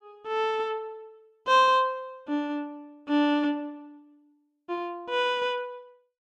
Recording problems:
none

